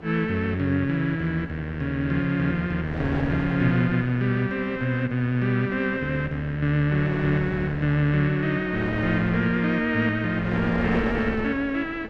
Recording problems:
wind noise; below 690 Hz, SNR 13 dB

